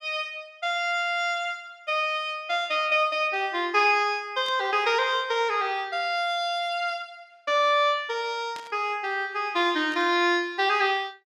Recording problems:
burst of static; at 4.5 s, at 8.5 s and at 10 s; peak -12 dB vs average level

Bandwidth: 14.5 kHz